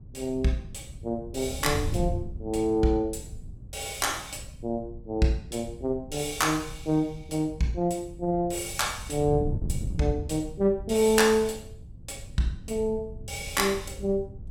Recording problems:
wind noise; below 130 Hz, SNR 11 dB

